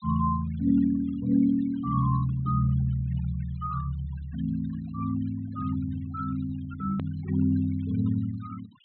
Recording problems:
low-pass filter; nothing above 4.1 kHz
denoising artefacts; signal-to-artefact ratio 21 dB
hard cut with a click; at 7 s

